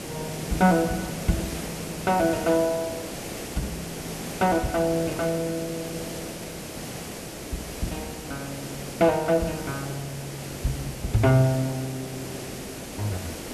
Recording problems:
hiss; SNR 9 dB

